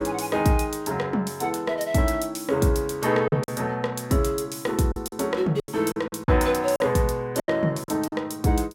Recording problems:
packet loss; 6% of the sound replaced, filled with silence

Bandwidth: 17.5 kHz